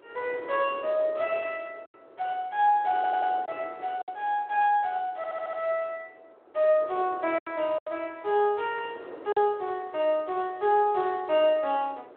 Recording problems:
phone line; 300 Hz to 3.6 kHz, Speex
wind noise; below 680 Hz, SNR 20 dB
packet loss; 3% of the sound replaced, filled with silence
stutter; at 3 s and at 5 s

